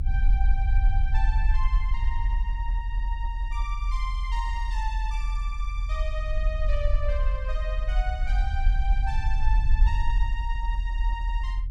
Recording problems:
rumble; below 46 Hz, SNR -9 dB

